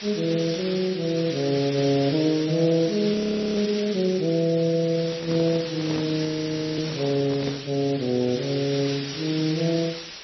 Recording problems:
codec artefacts; AAC, then MP3, log-spectral distance 16 dB, nothing above 5.8 kHz
background hiss; SNR 10 dB
audio freezing; at 3 s and at 6.5 s for 0.5 s
handling noise; from 5 to 7.5 s; peak -5 dB vs average level

